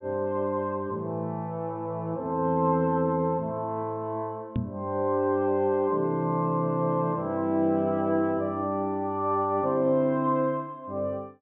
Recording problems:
treble cut off; nothing above 4 kHz
knock on the microphone; at 4.5 s; peak +2 dB vs average level

